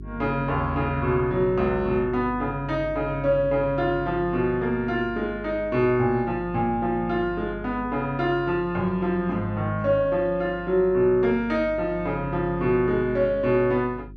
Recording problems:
electrical hum; 50 Hz, harmonics up to 400 Hz, SNR 16 dB

